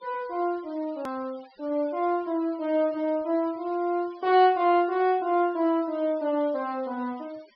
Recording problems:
treble missing; nothing above 5.5 kHz
noise reduction artefacts; signal-to-artefact ratio 27 dB
hard cut with a click; at 1 s

